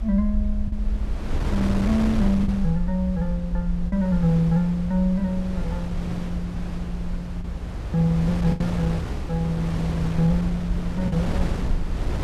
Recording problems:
rumble; below 60 Hz, SNR 7 dB
wind noise; below 370 Hz, SNR 7 dB
lost packets; 2% of the sound replaced, filled with the last packet

